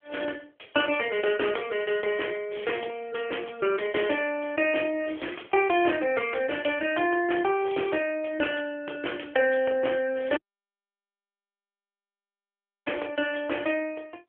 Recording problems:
phone line; 280 Hz to 3.3 kHz, AMR-NB
audio cutting out; at 10 s for 2.5 s

